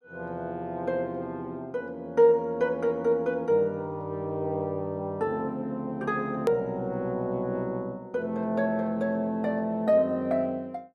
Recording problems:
click at an edit; at 6.5 s

